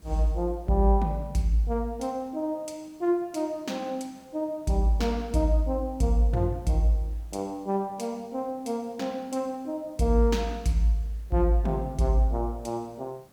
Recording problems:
hiss; slope -5 dB per octave, SNR 30 dB

